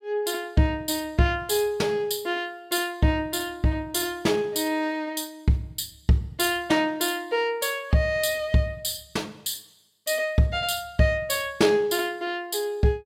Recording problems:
none

